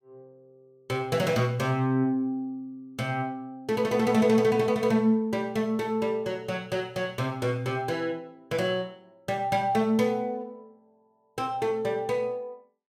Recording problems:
none

